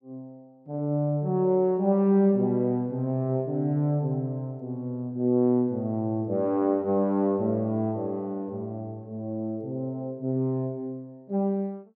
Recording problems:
none

